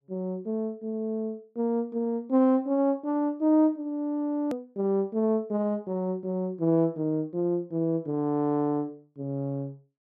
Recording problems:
edit click; at 4.5 s

